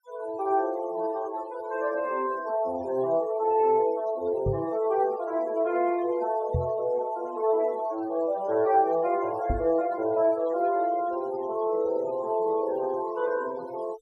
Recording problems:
denoising artefacts; signal-to-artefact ratio 20 dB
microphone thump; at 4.5 s, at 6.5 s and at 9.5 s; peak +2 dB vs average level

